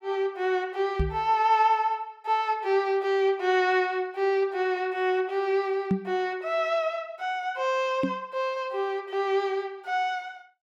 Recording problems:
microphone bump; at 1 s, at 6 s and at 8 s; peak +5 dB vs average level

